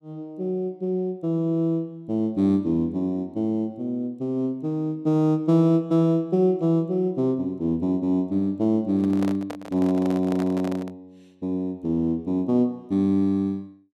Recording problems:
microphone handling noise; from 9 to 11 s; peak -7 dB vs average level

